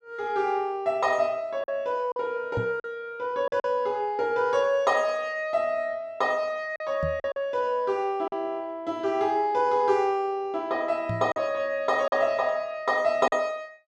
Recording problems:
packet loss; 4% of the sound replaced, filled with silence
microphone bump; at 2.5 s, at 7 s and at 11 s; peak -1 dB vs average level

